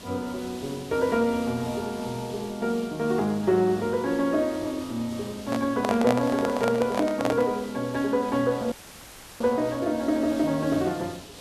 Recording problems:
hiss; SNR 16 dB
handling noise; from 5.5 to 7.5 s; peak +5 dB vs average level
dropout; at 8.5 s for 0.5 s

